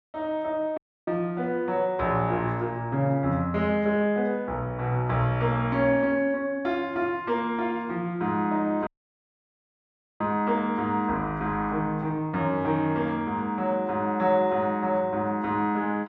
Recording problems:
audio cutting out; at 1 s and at 9 s for 1.5 s

